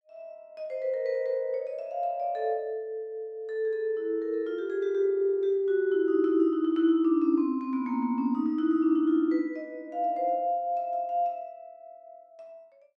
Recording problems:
none

